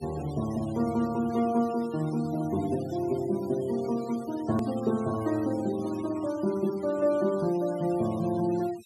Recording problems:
noise reduction artefacts; signal-to-artefact ratio 19 dB
edit click; at 4.5 s

